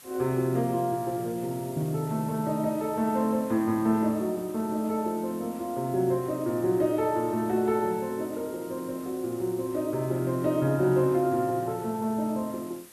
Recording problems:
background hiss; slope -1 dB per octave, SNR 20 dB

